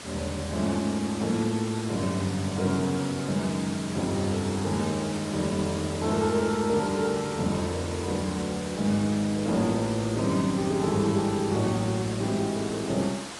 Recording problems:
lossy codec; AAC, log-spectral distance 8 dB
hiss; slope -3 dB per octave, SNR 10 dB

